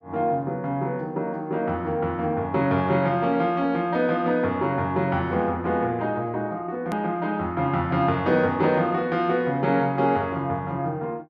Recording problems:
edit click; at 7 s

